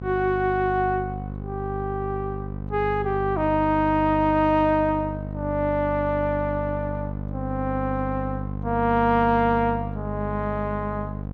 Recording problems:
mains hum; 50 Hz, harmonics up to 1.1 kHz, SNR 7 dB

